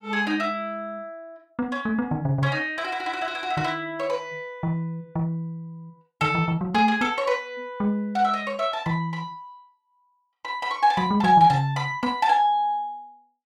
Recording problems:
none

